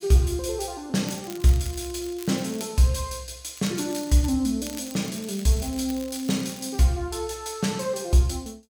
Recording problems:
crackling; from 1 to 2.5 s, at 3.5 s and from 4.5 to 7 s; loose cable, SNR 18 dB

